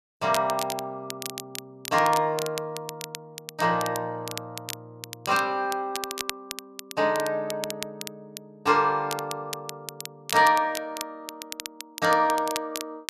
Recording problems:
crackle; vinyl, SNR 11 dB

